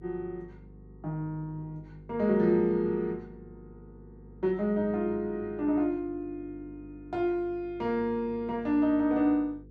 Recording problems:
mains hum; 50 Hz, harmonics up to 500 Hz, SNR 22 dB

